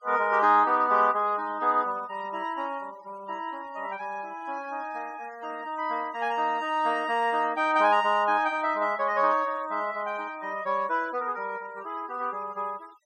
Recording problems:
denoising artefacts; signal-to-artefact ratio 24 dB

